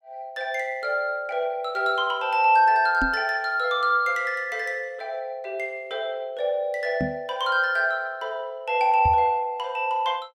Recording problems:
microphone thump; at 3 s, at 7 s and at 9 s; peak 0 dB vs average level

